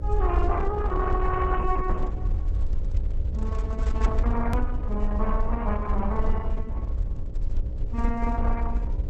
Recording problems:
lossy codec; MP3, then Opus, log-spectral distance 2 dB, nothing above 13.7 kHz
electrical hum; 60 Hz, harmonics up to 600 Hz, SNR 12 dB
rumble; below 60 Hz, SNR -1 dB
click at an edit; at 4.5 s

